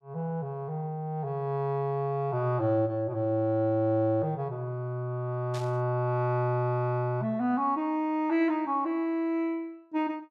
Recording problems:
burst of static; at 5.5 s; peak -10 dB vs average level

